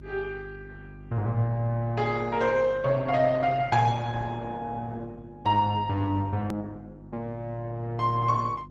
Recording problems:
codec artefacts; Opus, log-spectral distance 2 dB, nothing above 13.1 kHz
hum; 50 Hz, harmonics up to 350 Hz, SNR 17 dB
click at an edit; at 6.5 s

